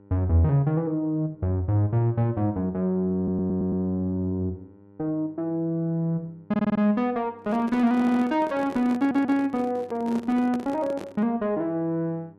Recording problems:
hum; 50 Hz, harmonics up to 1.4 kHz, SNR 28 dB
stutter; 4 times, first at 3 s
microphone handling noise; from 7.5 to 11 s; peak -7 dB vs average level

